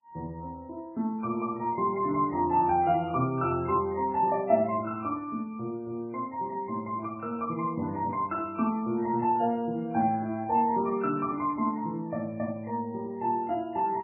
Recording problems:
lossy codec; MP3, log-spectral distance 2 dB, nothing above 2.4 kHz

